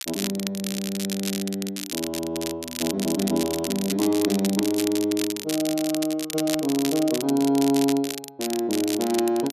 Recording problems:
crackle; vinyl, SNR 7 dB

